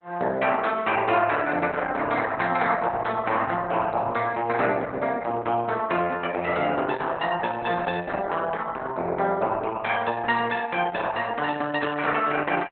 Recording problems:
codec artefacts; Opus, log-spectral distance 4 dB, nothing above 3.9 kHz

